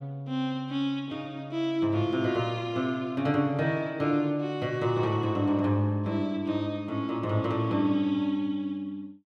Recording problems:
none

